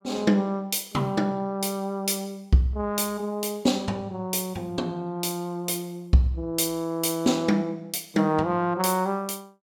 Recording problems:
none

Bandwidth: 17.5 kHz